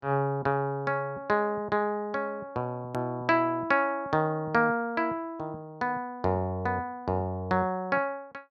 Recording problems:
hard cut with a click; at 3 s

